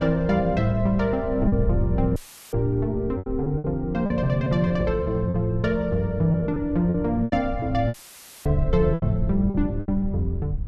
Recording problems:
wind noise; below 90 Hz, SNR 8 dB
packet loss; 8% of the sound replaced, filled with repeated pitch periods
dropout; at 2 s and at 8 s for 0.5 s; filled with static

